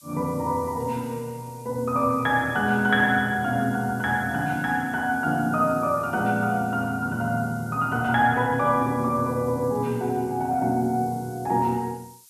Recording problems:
hiss; slope +6 dB per octave, SNR 24 dB

